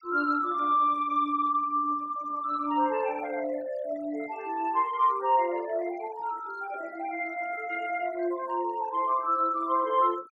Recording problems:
noise reduction artefacts; signal-to-artefact ratio 23 dB

